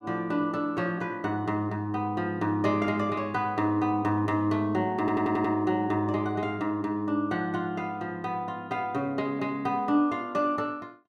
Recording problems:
audio stuttering; at 5 s

